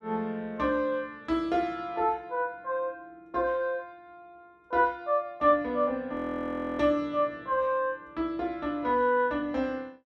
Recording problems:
audio freezing; at 6 s for 0.5 s

